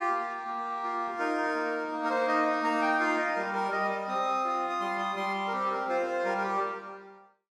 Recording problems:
none

